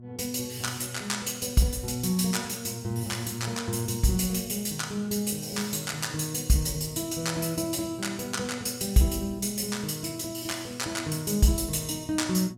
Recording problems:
hum; 60 Hz, harmonics up to 720 Hz, SNR 19 dB

